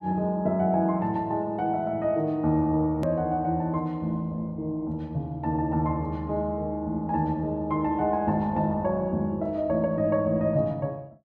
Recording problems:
hard cut with a click; at 3 s

